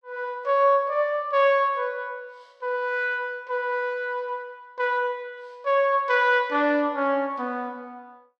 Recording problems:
none

